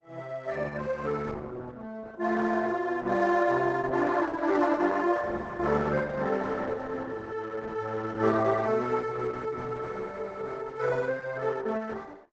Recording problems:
codec artefacts; Opus, log-spectral distance 4 dB, nothing above 7.8 kHz

